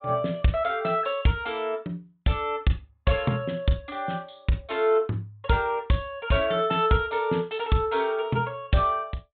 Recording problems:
treble missing; nothing above 4 kHz

